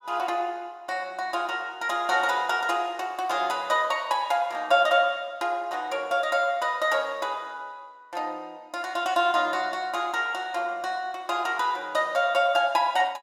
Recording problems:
none

